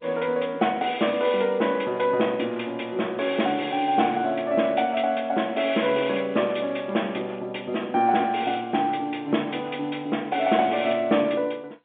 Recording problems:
telephone audio; 220 Hz to 3.4 kHz, G.711
crackling; from 5 to 7.5 s; loose cable, SNR 29 dB

